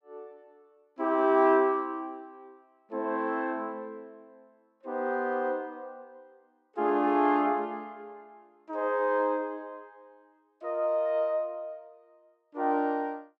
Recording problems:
none

